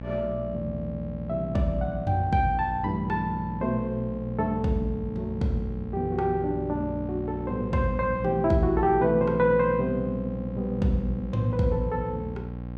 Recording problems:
electrical hum; 60 Hz, harmonics up to 1.1 kHz, SNR 9 dB

